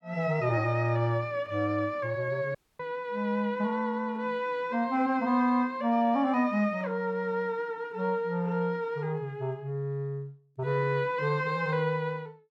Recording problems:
dropout; at 2.5 s

